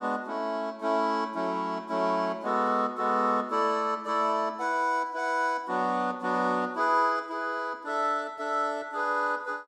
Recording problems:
none

